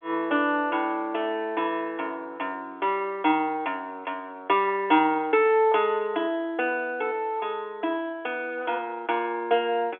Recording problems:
telephone audio; 240 Hz to 3.5 kHz, G.711

